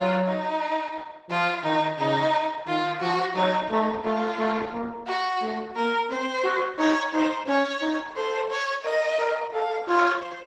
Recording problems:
lossy compression; Opus, log-spectral distance 5 dB

